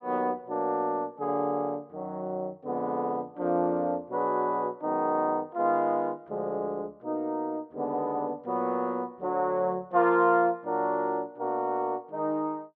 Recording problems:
none

